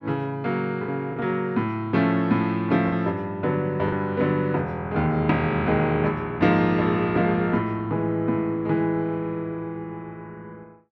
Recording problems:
lost packets; 1.5% of the sound replaced, filled with the last packet

